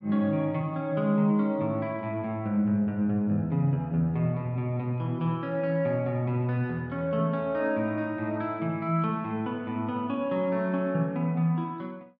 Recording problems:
none

